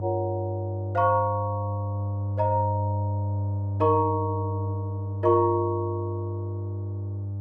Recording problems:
electrical hum; 50 Hz, harmonics up to 600 Hz, SNR 3 dB

